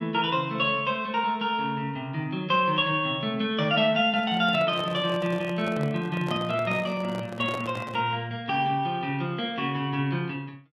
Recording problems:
microphone handling noise; from 4 to 8 s; peak -6 dB vs average level

